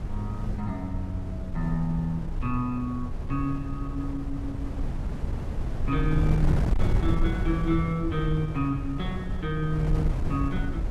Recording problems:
wind on the microphone; below 110 Hz, SNR 1 dB

